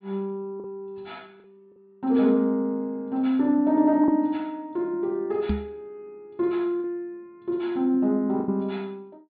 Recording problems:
low-pass filter; nothing above 4.8 kHz
lost packets; 2% of the sound replaced, filled with the last packet
microphone bump; at 5.5 s; peak +3 dB vs average level

